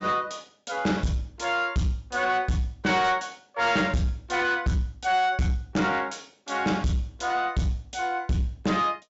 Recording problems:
treble cut off; nothing above 8 kHz
distortion; soft clipping, signal-to-distortion ratio 11 dB

